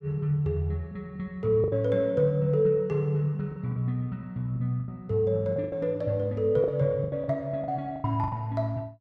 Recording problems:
lost packets; 9% of the sound replaced, filled with the last packet

